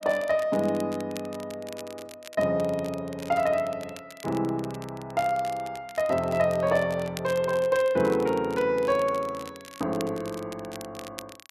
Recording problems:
crackling; vinyl, SNR 19 dB

